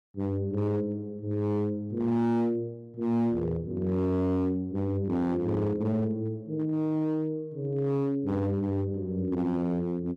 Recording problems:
distortion; hard clipping, signal-to-distortion ratio 12 dB

